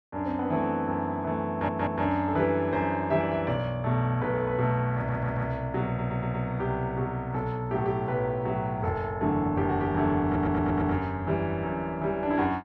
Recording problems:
audio stuttering; 4 times, first at 1.5 s

